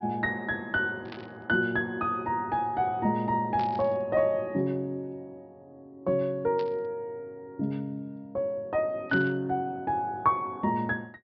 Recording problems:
treble missing; nothing above 5.5 kHz
burst of static; 4 times, first at 1 s; peak -9 dB vs average level

